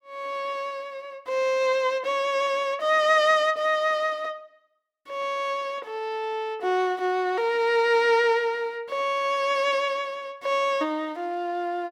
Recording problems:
none

